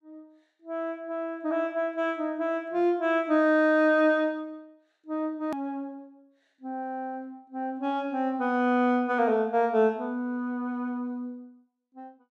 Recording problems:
edit click; at 5.5 s

